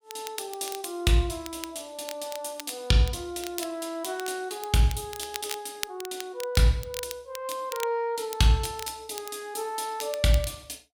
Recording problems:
crackle; vinyl, SNR 12 dB

